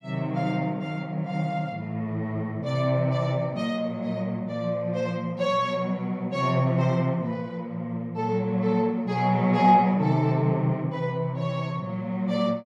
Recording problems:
none

